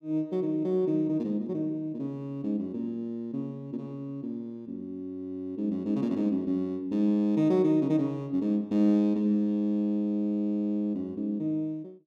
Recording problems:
none

